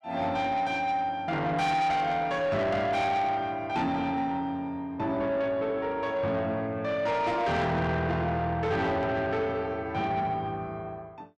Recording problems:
distortion; soft clipping, signal-to-distortion ratio 10 dB

